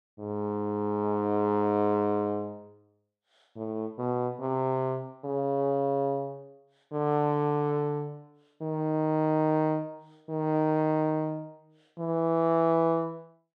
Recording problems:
none

